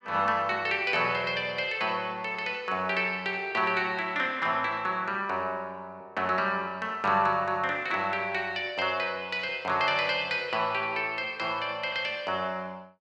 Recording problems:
none

